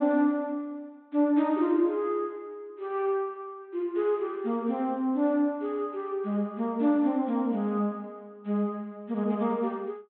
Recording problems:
treble cut off; nothing above 4 kHz

